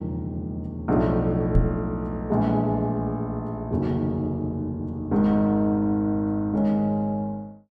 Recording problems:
microphone thump; at 1.5 s; peak +5 dB vs average level

